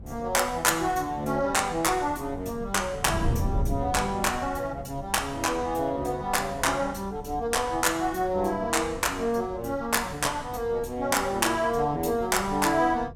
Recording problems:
wind on the microphone; below 160 Hz, SNR 12 dB

